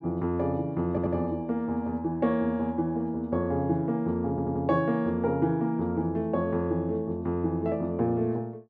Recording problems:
stutter; at 1 s and at 4.5 s

